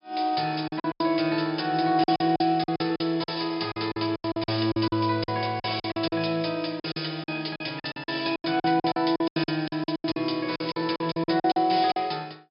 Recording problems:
low-pass filter; nothing above 5.5 kHz
lost packets; 17% of the sound replaced, filled with silence

